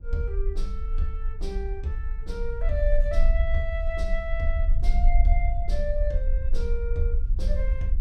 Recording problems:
low-frequency rumble; below 48 Hz, strongest tone 22 Hz, SNR -6 dB

